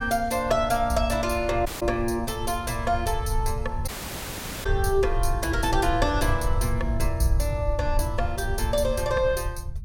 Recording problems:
rumble; below 80 Hz, SNR 5 dB
audio cutting out; at 1.5 s and at 4 s for 1 s

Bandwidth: 16.5 kHz